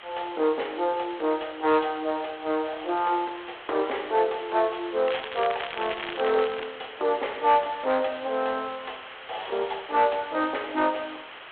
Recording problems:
phone line; 320 Hz to 3.4 kHz, G.726
distortion; soft clipping, signal-to-distortion ratio 12 dB
hiss; SNR 15 dB
crackling; from 5 to 6.5 s; loose cable, SNR 10 dB

